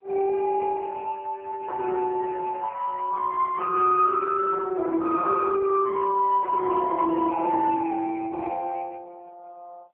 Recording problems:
phone line; 220 Hz to 2.3 kHz, AMR-NB

